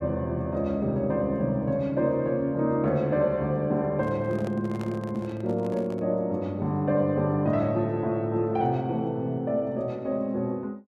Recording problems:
handling noise; from 4 to 6 s; peak -9 dB vs average level

